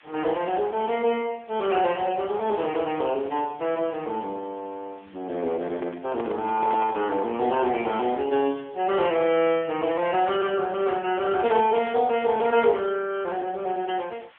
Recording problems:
telephone audio; 240 Hz to 3.4 kHz, AMR-NB
background hiss; SNR 28 dB
microphone handling noise; from 5.5 to 7.5 s; peak -3 dB vs average level

